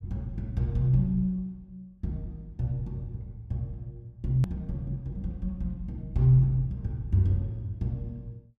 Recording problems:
click at an edit; at 4.5 s

